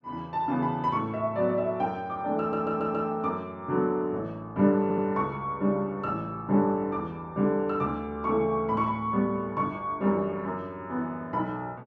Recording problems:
audio stuttering; at 2.5 s and at 5 s

